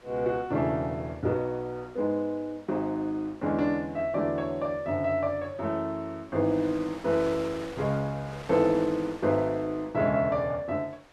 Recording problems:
wind on the microphone; below 2.6 kHz, SNR 20 dB

